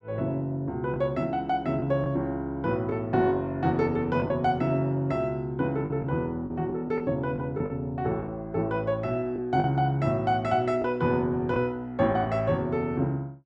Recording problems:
packet loss; 4% of the sound replaced, filled with the last packet

